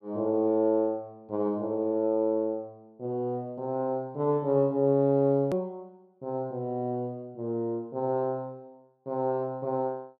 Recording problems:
hard cut with a click; at 5.5 s

